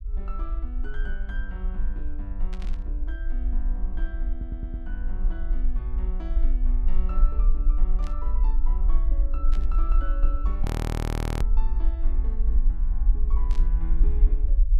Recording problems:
rumble; below 44 Hz, strongest tone 22 Hz, SNR -14 dB
static burst; 4 times, first at 2.5 s; peak +1 dB vs average level
stutter; at 4.5 s
audio freezing; at 11 s for 1 s

